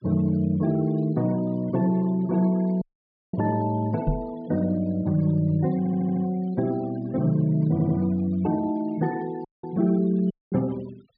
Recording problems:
treble cut off; nothing above 4.8 kHz
noise reduction artefacts; signal-to-artefact ratio 24 dB
audio cutting out; at 3 s for 0.5 s, at 9.5 s and at 10 s
microphone bump; at 4 s; peak +4 dB vs average level
audio stuttering; at 6 s and at 7.5 s

